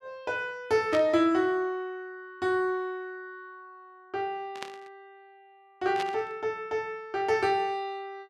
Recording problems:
burst of static; at 1 s, at 4.5 s and at 6 s; peak -3 dB vs average level

